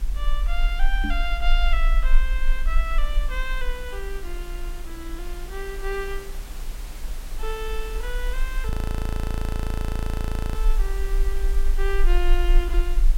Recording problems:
hum; 60 Hz, harmonics up to 300 Hz, SNR 15 dB
background hiss; slope -3 dB per octave, SNR 10 dB
low-frequency rumble; below 40 Hz, strongest tone 20 Hz, SNR -5 dB
microphone bump; at 1 s; peak +6 dB vs average level
audio freezing; at 8.5 s for 2 s

